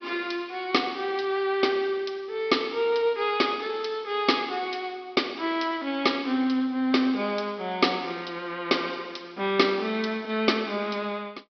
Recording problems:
treble cut off; nothing above 5.5 kHz
codec artefacts; MP2, log-spectral distance 5 dB

